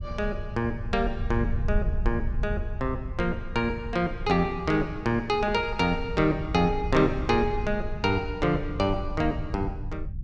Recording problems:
rumble; below 80 Hz, SNR 7 dB

